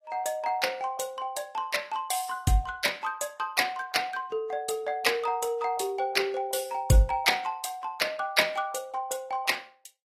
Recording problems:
lossy codec; AAC, log-spectral distance 3 dB

